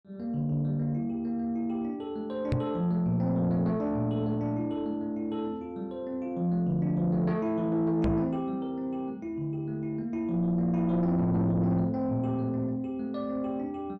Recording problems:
distortion; soft clipping, signal-to-distortion ratio 12 dB
microphone bump; at 2.5 s and at 8 s; peak +5 dB vs average level

